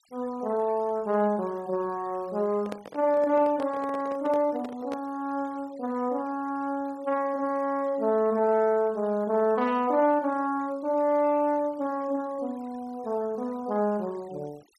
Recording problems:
denoising artefacts; signal-to-artefact ratio 27 dB
microphone handling noise; from 2.5 to 5 s; peak -6 dB vs average level

